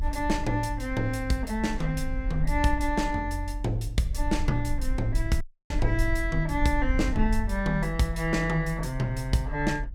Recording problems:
rumble; below 46 Hz, SNR 5 dB
audio cutting out; at 5.5 s

